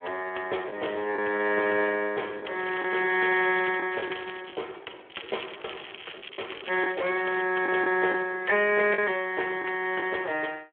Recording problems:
phone line; 320 Hz to 3.3 kHz, Speex
packet loss; 4% of the sound replaced, filled with the last packet
crackling; from 2.5 to 4 s, at 4 s and from 5 to 7.5 s; loose cable, SNR 15 dB

